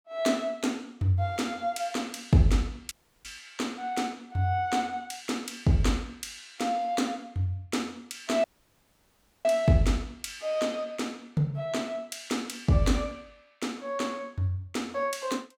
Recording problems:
audio cutting out; at 3 s and at 8.5 s for 1 s

